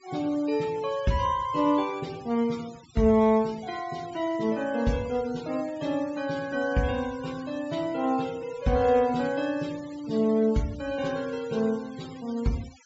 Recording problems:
treble missing; nothing above 8 kHz
denoising artefacts; signal-to-artefact ratio 21 dB

